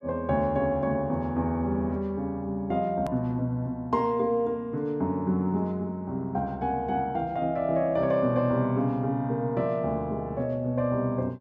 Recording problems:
edit click; at 3 s

